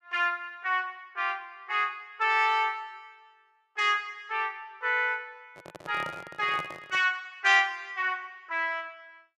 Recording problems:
microphone handling noise; from 5.5 to 7 s; peak -8 dB vs average level

